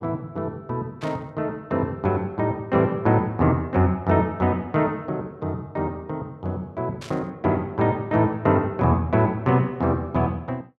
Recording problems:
static burst; at 1 s and at 7 s; peak -11 dB vs average level

